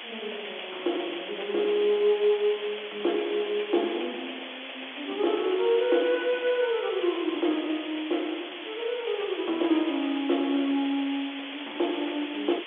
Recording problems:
phone line; 240 Hz to 3.5 kHz, G.711
hiss; SNR 10 dB

